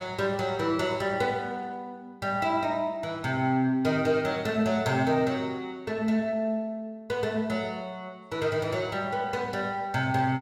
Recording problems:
none

